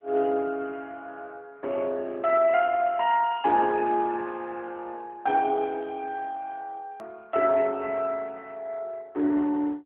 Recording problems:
phone line; 240 Hz to 3.4 kHz, AMR-NB
edit click; at 7 s

